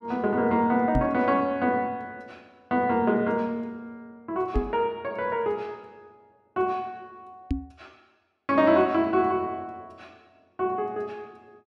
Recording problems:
knock on the microphone; at 1 s, at 4.5 s and at 7.5 s; peak +3 dB vs average level

